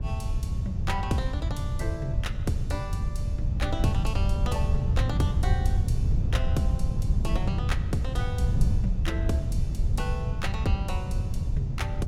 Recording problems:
wind noise; below 110 Hz, SNR -5 dB

